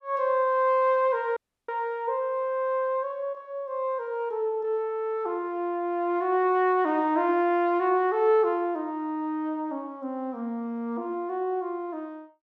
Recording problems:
audio cutting out; at 1.5 s

